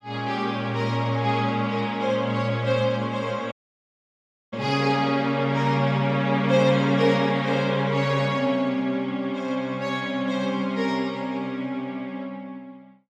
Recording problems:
audio cutting out; at 3.5 s for 1 s

